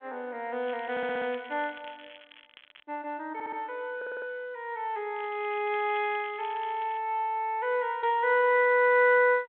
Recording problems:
phone line; 260 Hz to 3.4 kHz, G.726
crackle; from 0.5 to 3 s and from 5 to 7 s; loose cable, SNR 22 dB
stutter; at 1 s, at 3.5 s and at 4 s

